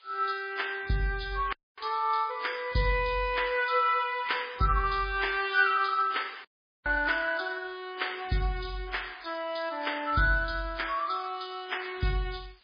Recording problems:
lossy codec; MP3, log-spectral distance 8 dB
hiss; SNR 30 dB
audio cutting out; at 1.5 s and at 6.5 s

